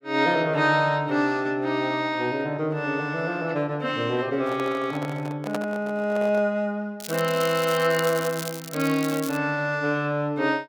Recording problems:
handling noise; from 4.5 to 6.5 s; peak -2 dB vs average level
crackling; from 7 to 9.5 s; loose cable, SNR 12 dB

